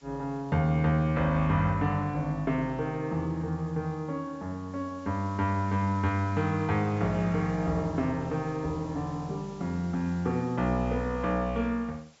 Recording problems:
treble missing; nothing above 7.5 kHz
background hiss; slope -1 dB per octave, SNR 27 dB

